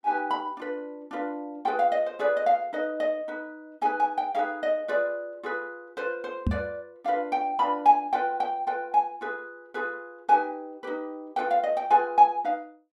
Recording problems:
knock on the microphone; at 6.5 s; peak +4 dB vs average level

